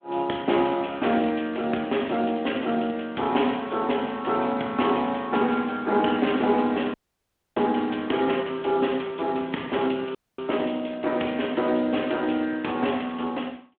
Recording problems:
phone line; 190 Hz to 3.4 kHz, Speex
dropout; at 7 s for 0.5 s and at 10 s

